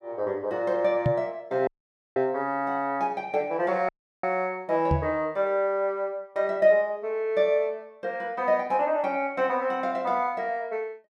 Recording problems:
microphone thump; at 1 s and at 5 s; peak +4 dB vs average level
dropout; at 1.5 s and at 4 s

